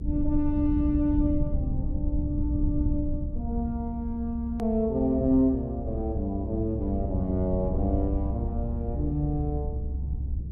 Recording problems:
rumble; below 94 Hz, SNR 3 dB
edit click; at 4.5 s

